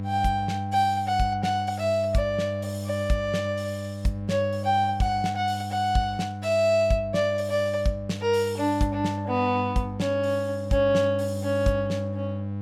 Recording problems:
electrical hum; 50 Hz, harmonics up to 800 Hz, SNR 8 dB

